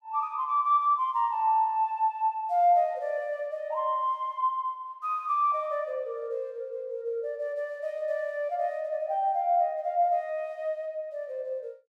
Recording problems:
none

